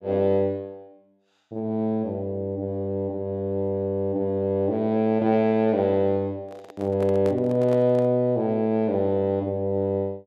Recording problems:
microphone handling noise; from 6.5 to 8 s; peak -8 dB vs average level

